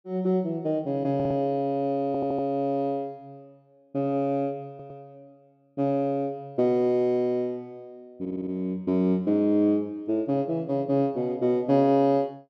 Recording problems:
audio stuttering; 4 times, first at 1 s

